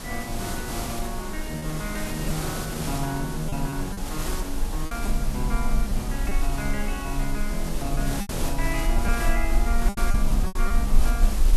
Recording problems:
background hiss; slope -4 dB per octave, SNR 2 dB
rumble; below 40 Hz, strongest tone 18 Hz, SNR -1 dB
lost packets; 5% of the sound replaced, filled with repeated pitch periods

